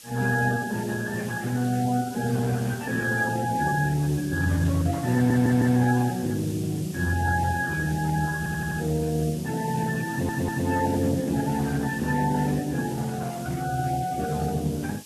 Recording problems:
lossy compression; Speex, then Vorbis, log-spectral distance 3 dB
hiss; SNR 17 dB
audio stuttering; at 5 s, at 8.5 s and at 10 s

